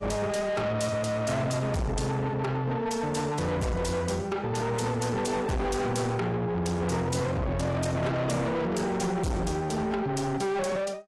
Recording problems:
codec artefacts; AAC, log-spectral distance 3 dB, nothing above 11.3 kHz
distortion; soft clipping, signal-to-distortion ratio 6 dB

